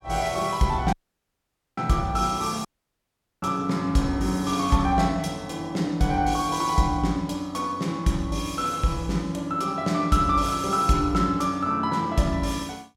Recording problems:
dropout; at 1 s for 1 s and at 2.5 s for 1 s

